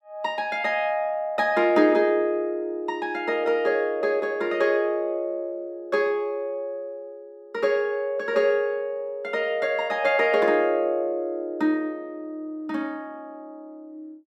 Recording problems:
none

